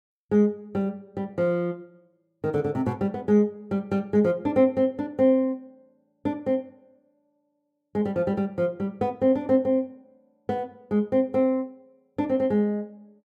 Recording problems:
none

